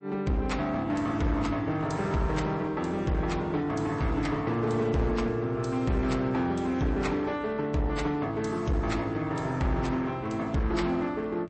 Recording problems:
codec artefacts; MP3, log-spectral distance 2 dB, nothing above 8.2 kHz
distortion; hard clipping, uneven, signal-to-distortion ratio 11 dB

